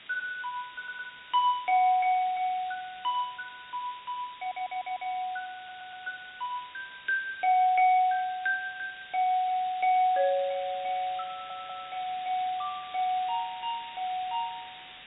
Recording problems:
treble missing; nothing above 4 kHz
background hiss; SNR 17 dB
audio stuttering; 4 times, first at 1 s

